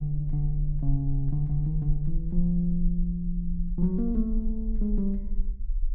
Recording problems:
rumble; below 38 Hz, strongest tone 22 Hz, SNR 5 dB

